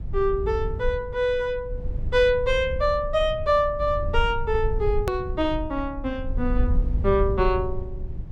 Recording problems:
low-frequency rumble; below 70 Hz, SNR 6 dB
click at an edit; at 5 s

